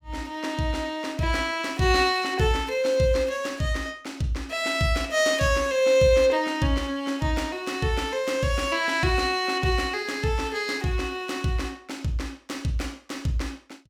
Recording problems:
none

